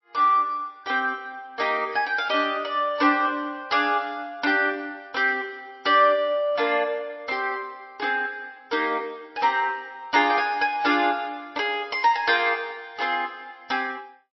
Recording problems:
lossy compression; MP3, log-spectral distance 2 dB, nothing above 5.7 kHz

